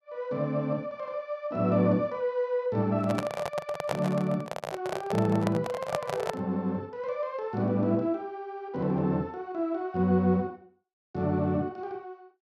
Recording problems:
microphone handling noise; from 3 to 6.5 s; peak +4 dB vs average level

